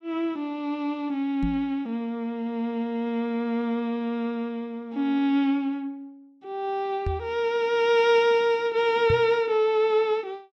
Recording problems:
microphone bump; at 1.5 s, at 7 s and at 9 s; peak +1 dB vs average level

